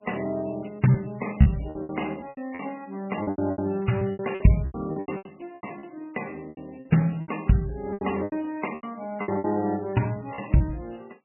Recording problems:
lossy codec; MP3, log-spectral distance 8 dB, nothing above 2.7 kHz
lost packets; 15% of the sound replaced, filled with repeated pitch periods

